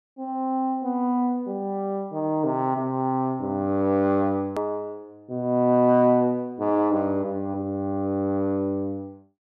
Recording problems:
edit click; at 4.5 s

